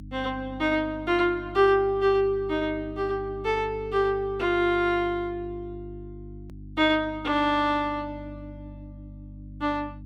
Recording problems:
hum; 50 Hz, harmonics up to 300 Hz, SNR 17 dB
hard cut with a click; at 6.5 s

